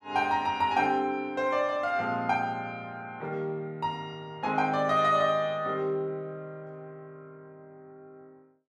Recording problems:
none

